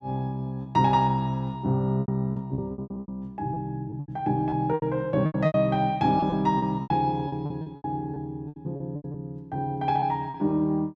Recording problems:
lost packets; 14% of the sound replaced, filled with repeated pitch periods

